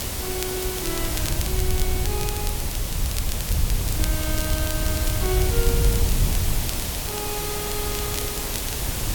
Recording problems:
background hiss; SNR -5 dB
wind noise; below 92 Hz, SNR -4 dB
crackle; vinyl, SNR 4 dB

